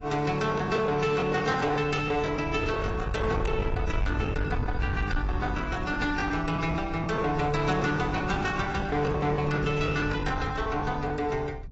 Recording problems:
lossy codec; AAC, log-spectral distance 3 dB, nothing above 7.6 kHz
distorted audio; soft clipping, signal-to-distortion ratio 11 dB
wind on the microphone; below 130 Hz, SNR 7 dB
lost packets; 15% of the sound replaced, filled with the last packet

